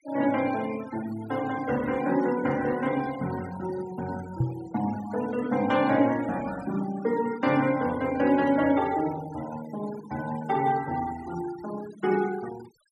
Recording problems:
denoising artefacts; signal-to-artefact ratio 16 dB
knock on the microphone; at 4.5 s; peak +5 dB vs average level

